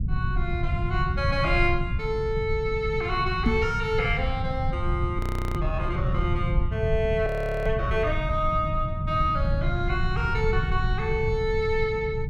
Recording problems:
rumble; below 130 Hz, SNR 2 dB
microphone bump; at 3.5 s; peak +7 dB vs average level
frozen audio; at 5 s and at 7.5 s

